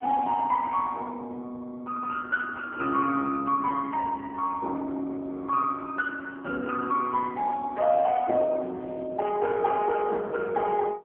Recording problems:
phone line; 260 Hz to 2.8 kHz, AMR-NB

